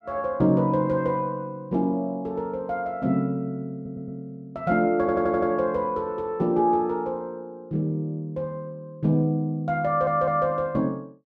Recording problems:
stutter; at 4 s, at 5 s and at 10 s

